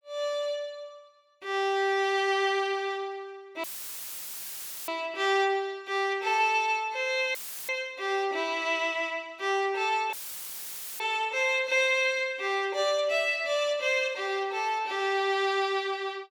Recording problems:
dropout; at 3.5 s for 1 s, at 7.5 s and at 10 s for 1 s; filled with static

